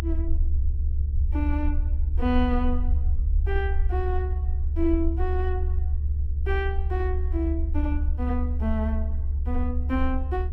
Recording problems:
electrical hum; 50 Hz, harmonics up to 450 Hz, SNR 23 dB
low-frequency rumble; below 72 Hz, SNR -4 dB

